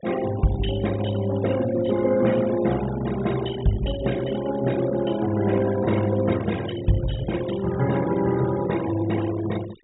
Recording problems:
low-pass filter; nothing above 4 kHz
noise reduction artefacts; signal-to-artefact ratio 15 dB

